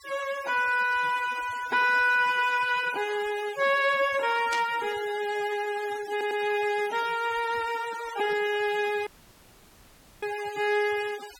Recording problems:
denoising artefacts; signal-to-artefact ratio 17 dB
static burst; at 4.5 s; peak -5 dB vs average level
stutter; at 6 s
audio cutting out; at 9 s for 1 s

